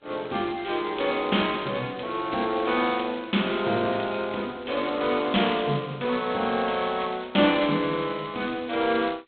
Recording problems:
phone line; 220 Hz to 3.7 kHz, G.726

